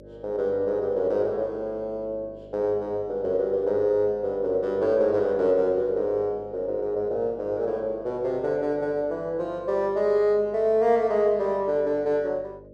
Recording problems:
electrical hum; 50 Hz, harmonics up to 600 Hz, SNR 22 dB

